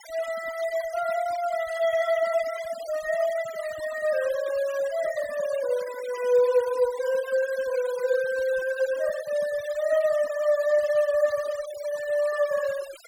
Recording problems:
denoising artefacts; signal-to-artefact ratio 17 dB

